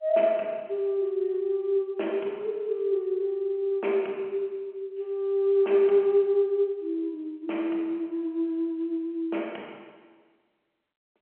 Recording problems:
phone line; 280 Hz to 3.2 kHz, G.711

